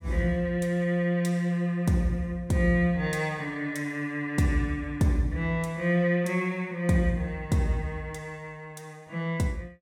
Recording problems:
none

